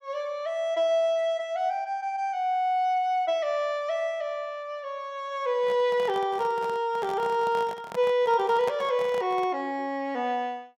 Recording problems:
handling noise; from 5.5 to 9.5 s; peak -5 dB vs average level

